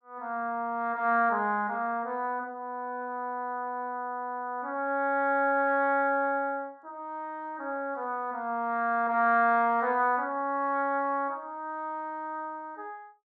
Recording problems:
none

